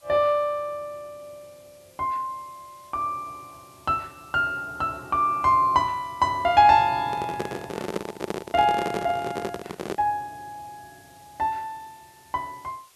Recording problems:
background hiss; slope +1 dB per octave, SNR 29 dB
microphone handling noise; from 7 to 10 s; peak 0 dB vs average level

